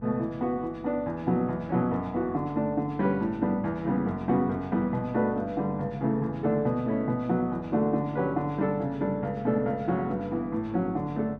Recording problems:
hum; 50 Hz, harmonics up to 500 Hz, SNR 21 dB

